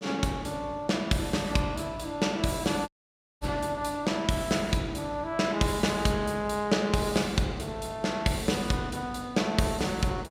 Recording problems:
audio cutting out; at 3 s for 0.5 s

